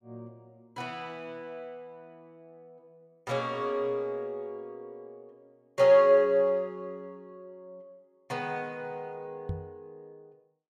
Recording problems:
knock on the microphone; at 9.5 s; peak -3 dB vs average level

